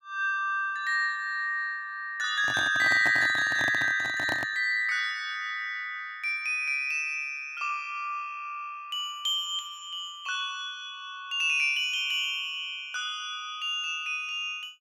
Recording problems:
handling noise; from 2.5 to 4.5 s; peak -2 dB vs average level

